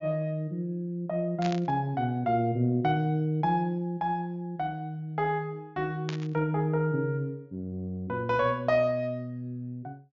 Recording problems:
treble cut off; nothing above 7.3 kHz
static burst; at 1.5 s and at 6 s; peak -4 dB vs average level

